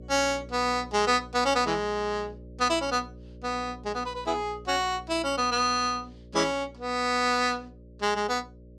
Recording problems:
electrical hum; 60 Hz, harmonics up to 600 Hz, SNR 20 dB

